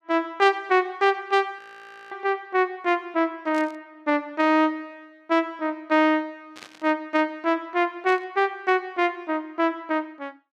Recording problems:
burst of static; 4 times, first at 1.5 s; peak -12 dB vs average level
audio freezing; at 1.5 s for 0.5 s

